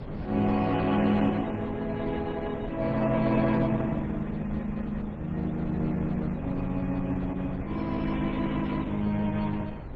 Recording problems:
lossy codec; MP3, then Opus, log-spectral distance 3 dB
wind noise; below 320 Hz, SNR 10 dB

